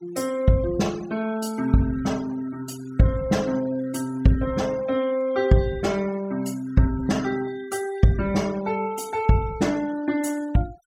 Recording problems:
noise reduction artefacts; signal-to-artefact ratio 21 dB

